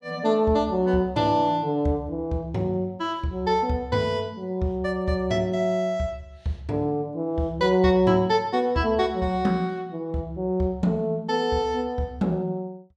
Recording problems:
none

